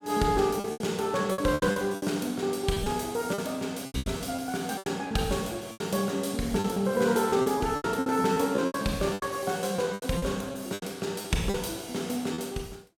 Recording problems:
lost packets; 13% of the sound replaced, filled with repeated pitch periods

